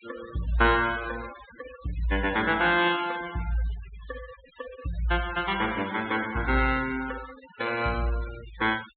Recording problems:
treble cut off; nothing above 4 kHz
denoising artefacts; signal-to-artefact ratio 16 dB

